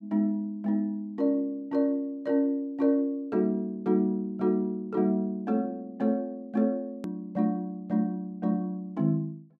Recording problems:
edit click; at 7 s

